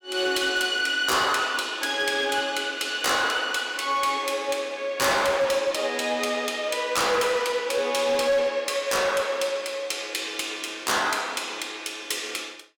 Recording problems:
distorted audio; hard clipping, signal-to-distortion ratio 12 dB

